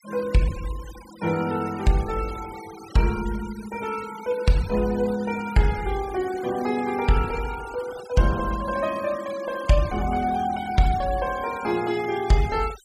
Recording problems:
denoising artefacts; signal-to-artefact ratio 16 dB

